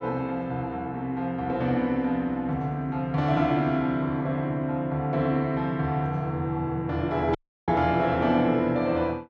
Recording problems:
dropout; at 7.5 s

